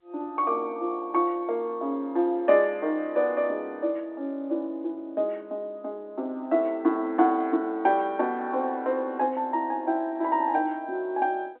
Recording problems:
phone line; 260 Hz to 3.6 kHz, G.711

